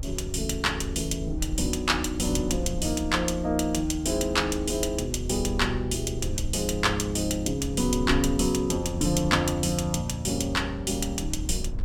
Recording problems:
rumble; below 74 Hz, SNR 9 dB

